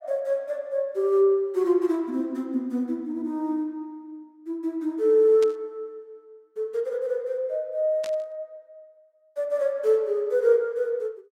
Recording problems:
static burst; at 5.5 s and at 8 s; peak -10 dB vs average level

